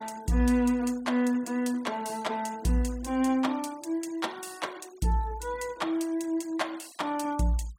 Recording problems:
noise reduction artefacts; signal-to-artefact ratio 23 dB

